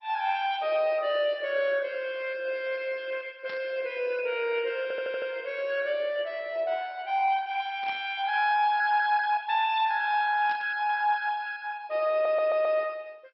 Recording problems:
lossy codec; MP2, log-spectral distance 4 dB, nothing above 4.8 kHz
burst of static; at 3.5 s, at 8 s and at 10 s; peak -12 dB vs average level
audio stuttering; at 5 s and at 12 s

